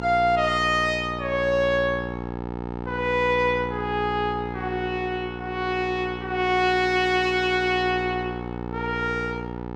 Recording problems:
hum; 60 Hz, harmonics up to 1.8 kHz, SNR 9 dB

